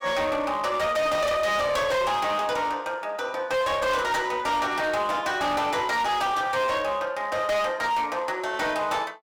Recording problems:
distorted audio; hard clipping, uneven, signal-to-distortion ratio 8 dB

